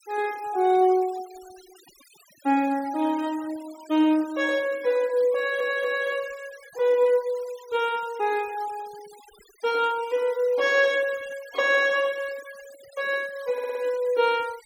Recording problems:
noise reduction artefacts; signal-to-artefact ratio 22 dB
stutter; at 5.5 s and at 14 s

